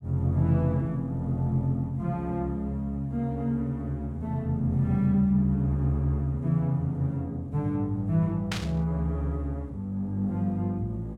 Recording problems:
static burst; at 8.5 s; peak -1 dB vs average level

